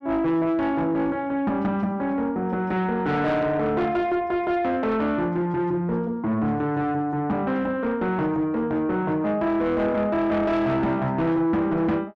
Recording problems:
distorted audio; soft clipping, signal-to-distortion ratio 10 dB

